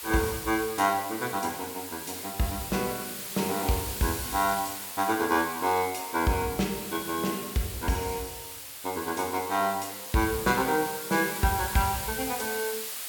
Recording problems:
background hiss; slope +2 dB per octave, SNR 7 dB

